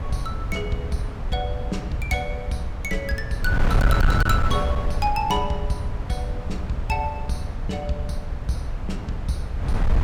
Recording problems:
distorted audio; hard clipping, signal-to-distortion ratio 11 dB
wind on the microphone; below 110 Hz, SNR 0 dB

